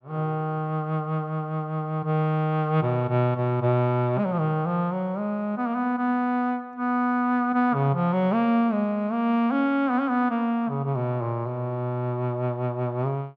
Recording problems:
none

